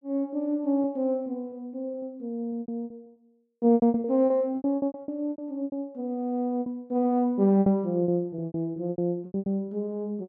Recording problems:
packet loss; 16% of the sound replaced, filled with repeated pitch periods

